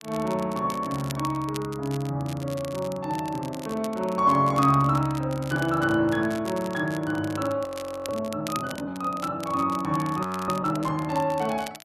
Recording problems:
crackling; vinyl, SNR 17 dB
frozen audio; at 7.5 s and at 10 s

